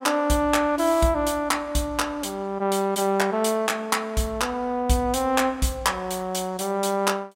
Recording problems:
none

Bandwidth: 16 kHz